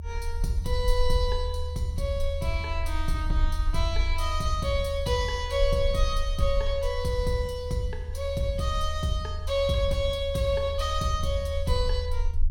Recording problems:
low-frequency rumble; below 76 Hz, SNR 3 dB

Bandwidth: 17 kHz